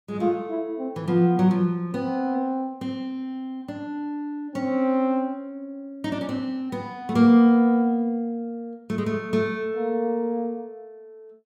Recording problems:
none

